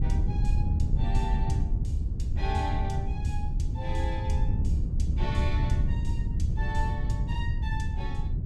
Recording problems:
wind on the microphone; below 100 Hz, SNR -5 dB

